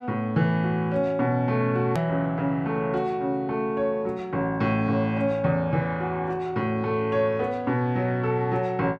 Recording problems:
edit click; at 2 s

